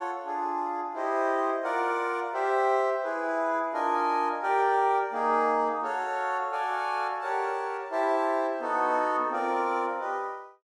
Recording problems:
none

